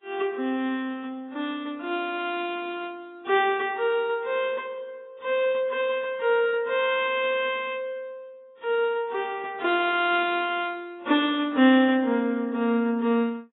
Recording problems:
codec artefacts; AAC, log-spectral distance 2 dB, nothing above 3.6 kHz

